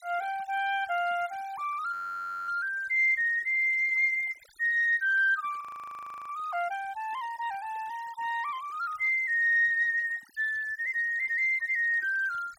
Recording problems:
denoising artefacts; signal-to-artefact ratio 26 dB
audio freezing; at 2 s for 0.5 s and at 5.5 s for 0.5 s

